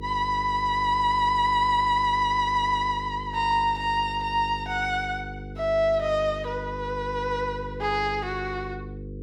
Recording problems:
hum; 50 Hz, harmonics up to 500 Hz, SNR 13 dB

